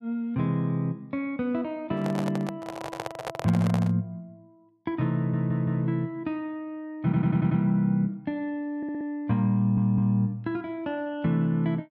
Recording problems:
handling noise; from 2 to 4 s; peak -2 dB vs average level
audio stuttering; 4 times, first at 5 s

